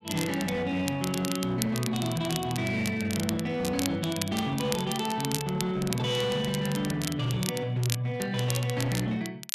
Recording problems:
distorted audio; hard clipping, signal-to-distortion ratio 12 dB
crackle; vinyl, SNR 8 dB

